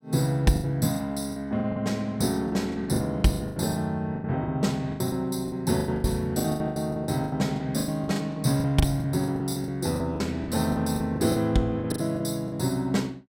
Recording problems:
lost packets; 18% of the sound replaced, filled with the last packet

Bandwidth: 16 kHz